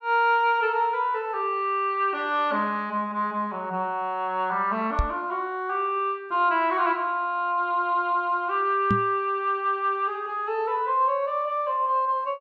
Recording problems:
microphone thump; at 5 s and at 9 s; peak +3 dB vs average level

